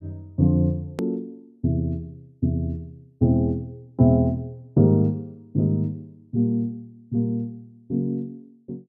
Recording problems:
hard cut with a click; at 1 s

